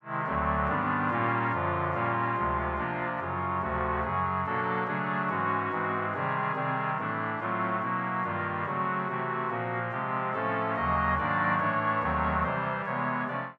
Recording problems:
none

